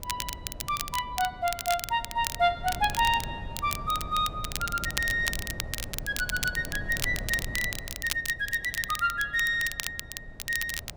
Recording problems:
wind noise; below 200 Hz, SNR 13 dB
crackle; vinyl, SNR 7 dB

